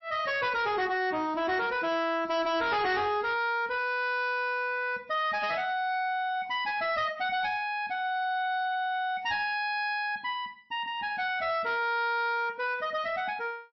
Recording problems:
codec artefacts; MP3, log-spectral distance 2 dB, nothing above 5.7 kHz
distorted audio; hard clipping, signal-to-distortion ratio 11 dB

